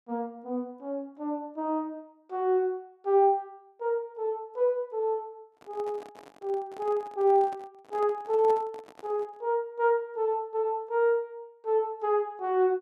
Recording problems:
microphone handling noise; from 5.5 to 9.5 s; peak -10 dB vs average level

